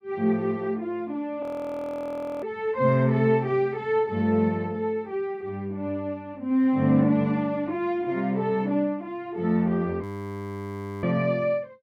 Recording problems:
frozen audio; at 1.5 s for 1 s and at 10 s for 1 s

